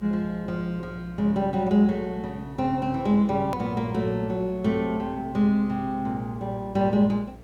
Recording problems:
hum; 60 Hz, harmonics up to 720 Hz, SNR 21 dB
background hiss; slope -7 dB per octave, SNR 27 dB
click at an edit; at 3.5 s

